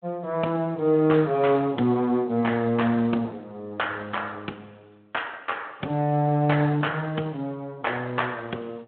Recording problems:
phone line; 260 Hz to 3.5 kHz, Speex

